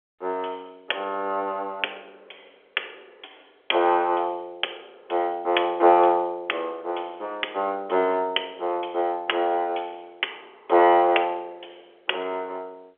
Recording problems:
phone line; 320 Hz to 3.4 kHz, G.711

